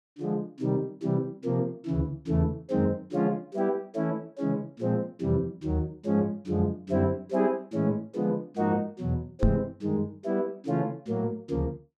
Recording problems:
knock on the microphone; at 9.5 s; peak +8 dB vs average level

